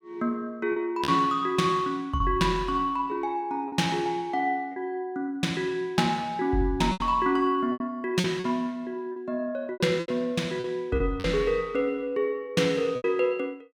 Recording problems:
packet loss; 6% of the sound replaced, filled with repeated pitch periods

